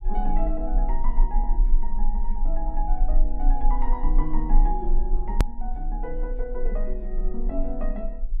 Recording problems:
low-frequency rumble; below 32 Hz, strongest tone 24 Hz, SNR -6 dB
edit click; at 5.5 s

